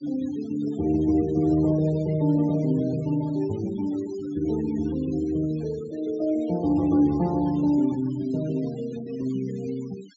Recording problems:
treble cut off; nothing above 8 kHz
noise reduction artefacts; signal-to-artefact ratio 23 dB

